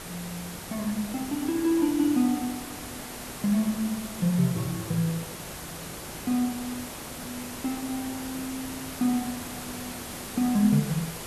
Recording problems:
background hiss; slope -3 dB per octave, SNR 9 dB

